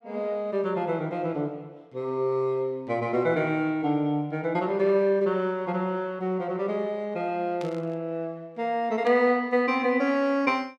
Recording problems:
burst of static; at 7.5 s and at 9 s; peak -10 dB vs average level

